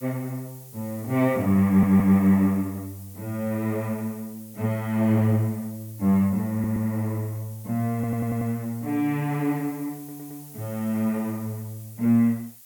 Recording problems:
background hiss; slope +3 dB per octave, SNR 20 dB
stutter; 4 times, first at 1.5 s

